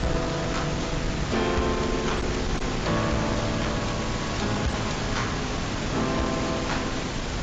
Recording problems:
lossy compression; AAC, log-spectral distance 11 dB, nothing above 7.3 kHz
distorted audio; hard clipping, uneven, signal-to-distortion ratio 10 dB
hum; 50 Hz, harmonics up to 300 Hz, SNR 9 dB
hiss; slope -4 dB per octave, SNR 1 dB
rumble; below 150 Hz, SNR 9 dB

